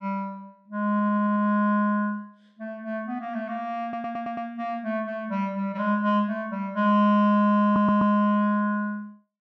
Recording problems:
audio stuttering; at 1 s, at 4 s and at 7.5 s

